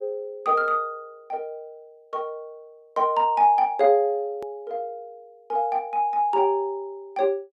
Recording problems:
click at an edit; at 4.5 s

